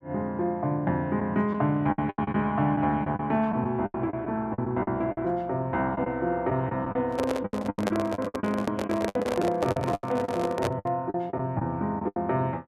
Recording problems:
packet loss; 12% of the sound replaced, filled with the last packet
microphone handling noise; from 7 to 11 s; peak +4 dB vs average level

